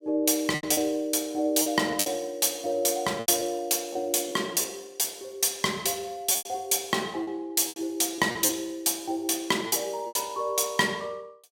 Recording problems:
packet loss; 8% of the sound replaced, filled with repeated pitch periods

